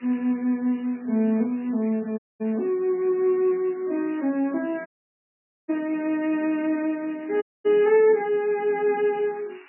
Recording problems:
codec artefacts; MP3, log-spectral distance 5 dB, nothing above 2.5 kHz
background hiss; SNR 27 dB
dropout; at 2 s, at 5 s for 1 s and at 7.5 s

